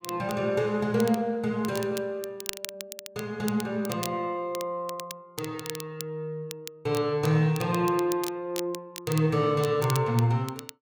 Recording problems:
crackling; vinyl, SNR 13 dB

